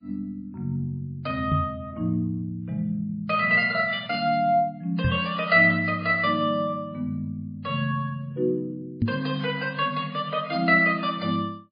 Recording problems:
lossy compression; MP3, log-spectral distance 2 dB, nothing above 4.2 kHz
knock on the microphone; at 1.5 s, at 5 s and at 9 s; peak +4 dB vs average level

